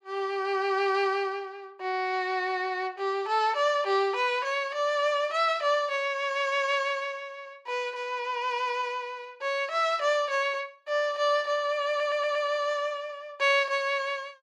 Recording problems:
stutter; at 12 s

